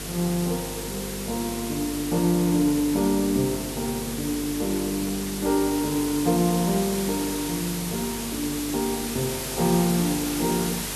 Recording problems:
electrical hum; 50 Hz, harmonics up to 450 Hz, SNR 13 dB
background hiss; slope -1 dB per octave, SNR 6 dB

